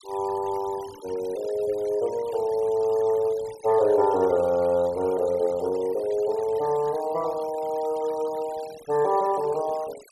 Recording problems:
denoising artefacts; signal-to-artefact ratio 21 dB

